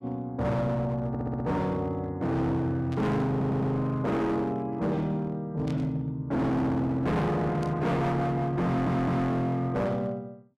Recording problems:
distortion; hard clipping, signal-to-distortion ratio 7 dB
stutter; at 1 s, at 3.5 s and at 8.5 s
static burst; at 3 s, at 5.5 s and at 7.5 s; peak -14 dB vs average level

